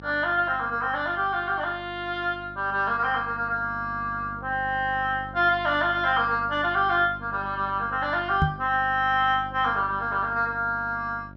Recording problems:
hum; 50 Hz, harmonics up to 950 Hz, SNR 18 dB
microphone thump; at 8.5 s; peak +5 dB vs average level

